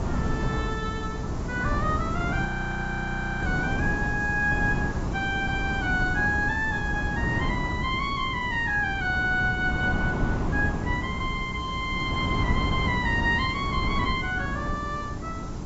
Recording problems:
lossy codec; AAC, log-spectral distance 5 dB, nothing above 6.3 kHz
hum; 60 Hz, harmonics up to 420 Hz, SNR 14 dB
hiss; slope +3 dB per octave, SNR 23 dB
wind on the microphone; below 300 Hz, SNR 3 dB
audio freezing; at 2.5 s for 1 s

